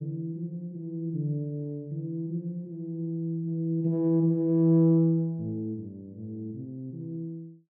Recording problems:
none

